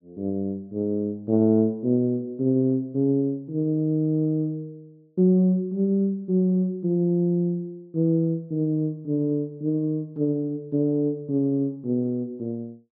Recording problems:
low-pass filter; nothing above 5.5 kHz

